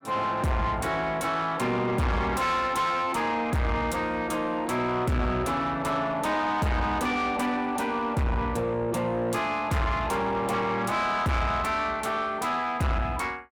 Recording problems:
distortion; soft clipping, signal-to-distortion ratio 7 dB

